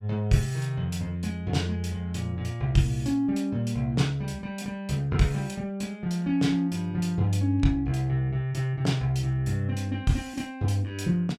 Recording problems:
none

